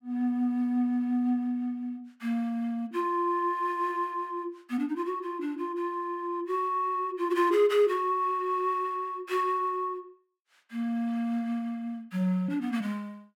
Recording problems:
none

